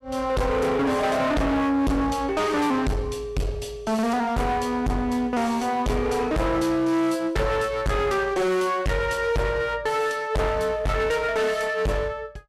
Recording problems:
distorted audio; hard clipping, uneven, signal-to-distortion ratio 5 dB

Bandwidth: 14 kHz